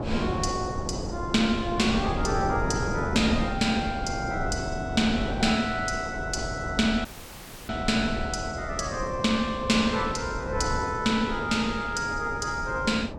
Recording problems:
wind noise; below 470 Hz, SNR 6 dB
audio cutting out; at 7 s for 0.5 s

